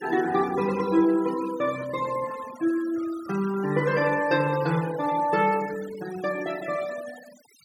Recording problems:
noise reduction artefacts; signal-to-artefact ratio 17 dB

